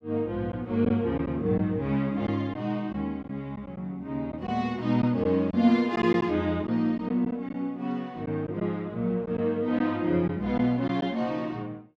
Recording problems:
lost packets; 3% of the sound replaced, filled with silence

